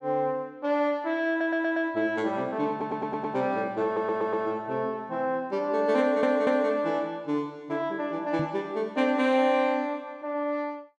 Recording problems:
audio stuttering; 4 times, first at 1.5 s
microphone thump; at 8.5 s; peak -3 dB vs average level

